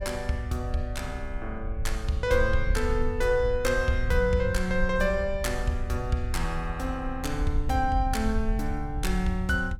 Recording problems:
wind on the microphone; below 64 Hz, SNR 5 dB

